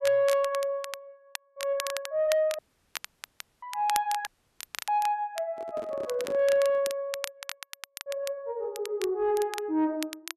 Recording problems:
distorted audio; soft clipping, signal-to-distortion ratio 11 dB
crackle; vinyl, SNR 12 dB
dropout; at 2.5 s for 1 s and at 4.5 s for 0.5 s
handling noise; from 5.5 to 7 s; peak -8 dB vs average level

